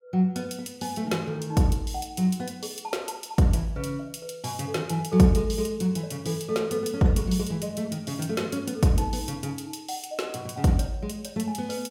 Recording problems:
none

